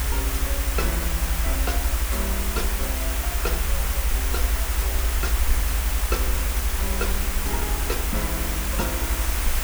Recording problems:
background hiss; slope -2 dB per octave, SNR -6 dB
rumble; below 60 Hz, SNR -6 dB

